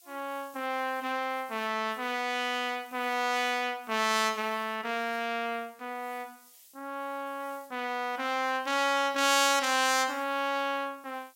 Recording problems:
background hiss; SNR 26 dB

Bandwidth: 16 kHz